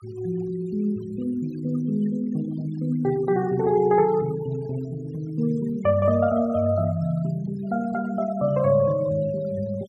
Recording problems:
denoising artefacts; signal-to-artefact ratio 21 dB

